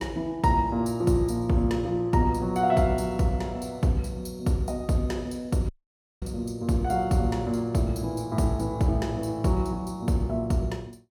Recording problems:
dropout; at 5.5 s for 0.5 s

